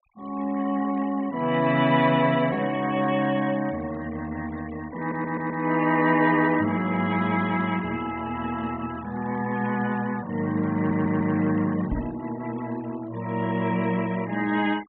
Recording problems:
low-pass filter; nothing above 4 kHz
noise reduction artefacts; signal-to-artefact ratio 20 dB
stutter; at 5 s and at 11 s
knock on the microphone; at 12 s; peak -1 dB vs average level

